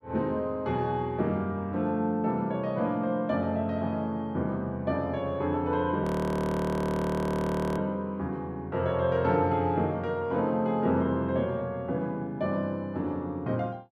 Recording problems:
audio freezing; at 6 s for 1.5 s

